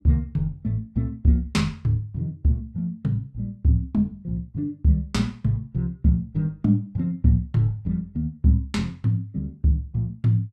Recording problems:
none

